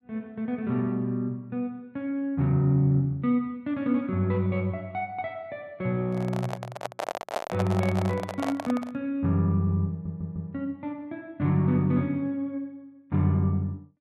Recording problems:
microphone handling noise; from 6 to 9 s; peak +2 dB vs average level
audio stuttering; at 10 s

